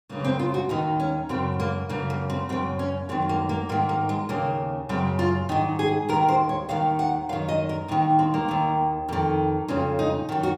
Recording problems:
none

